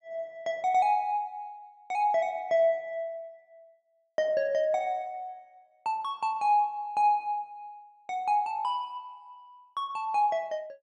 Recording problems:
none

